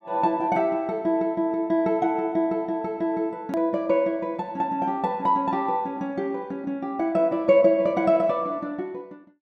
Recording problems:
click at an edit; at 3.5 s

